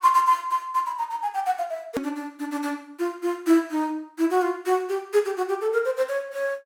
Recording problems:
edit click; at 2 s

